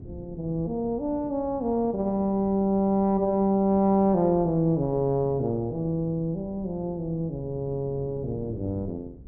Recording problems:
wind on the microphone; below 270 Hz, SNR 18 dB

